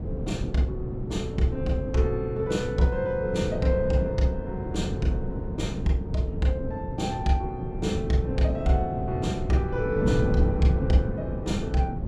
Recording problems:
wind on the microphone; below 220 Hz, SNR 4 dB

